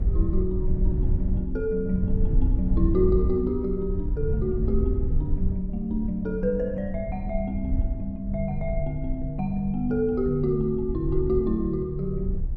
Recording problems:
rumble; below 80 Hz, SNR 2 dB

